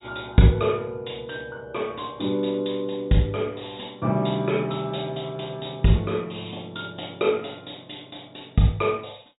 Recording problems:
treble cut off; nothing above 4 kHz

